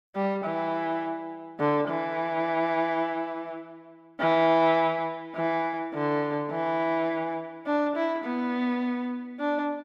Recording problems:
none

